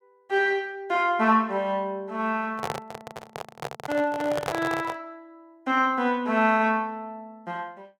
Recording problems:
microphone handling noise; from 2.5 to 5 s; peak +1 dB vs average level

